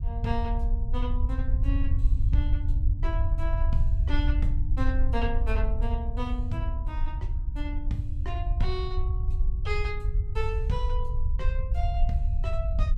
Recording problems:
rumble; below 68 Hz, SNR -7 dB

